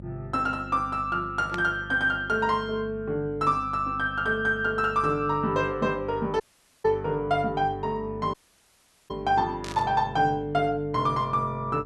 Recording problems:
electrical hum; 50 Hz, harmonics up to 550 Hz, SNR 16 dB
burst of static; at 1.5 s and at 9.5 s; peak -6 dB vs average level
dropout; at 6.5 s and at 8.5 s for 1 s

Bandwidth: 12 kHz